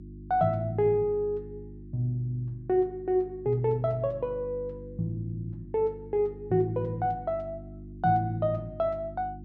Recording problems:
electrical hum; 50 Hz, harmonics up to 350 Hz, SNR 16 dB

